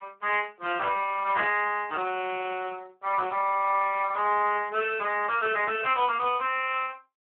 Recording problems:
phone line; 220 Hz to 3.1 kHz, Speex

